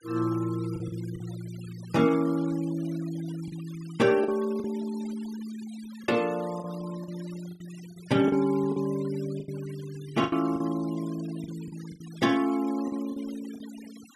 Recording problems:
denoising artefacts; signal-to-artefact ratio 20 dB
lost packets; 7% of the sound replaced, filled with the last packet

